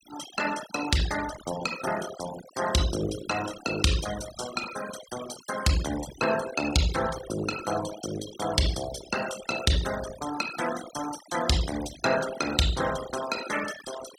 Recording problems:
noise reduction artefacts; signal-to-artefact ratio 10 dB

